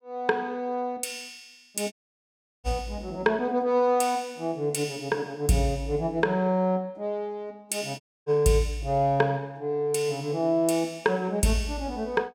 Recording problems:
dropout; at 2 s for 0.5 s and at 8 s

